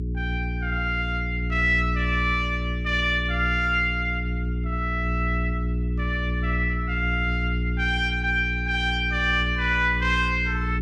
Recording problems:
hum; 60 Hz, harmonics up to 420 Hz, SNR 3 dB

